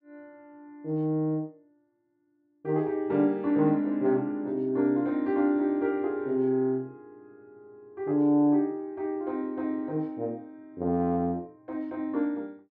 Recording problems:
none

